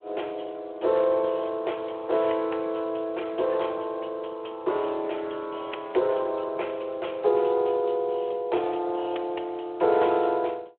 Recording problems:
telephone audio; 320 Hz to 3.4 kHz, Speex

